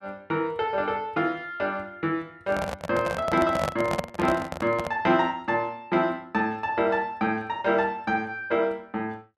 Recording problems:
handling noise; from 2.5 to 5 s; peak +3 dB vs average level

